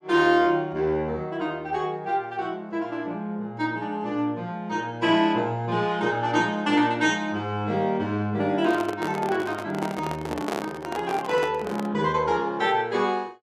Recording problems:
microphone handling noise; from 8.5 to 12 s; peak +1 dB vs average level

